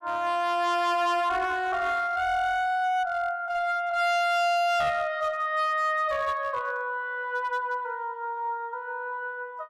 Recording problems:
distortion; hard clipping, uneven, signal-to-distortion ratio 7 dB

